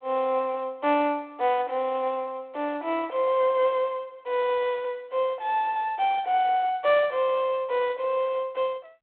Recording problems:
phone line; 300 Hz to 3.6 kHz, G.726

